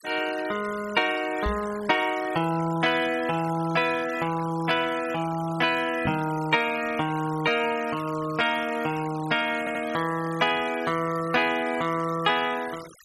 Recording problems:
denoising artefacts; signal-to-artefact ratio 16 dB
microphone thump; at 1.5 s and at 6 s; peak -1 dB vs average level
audio stuttering; at 9.5 s

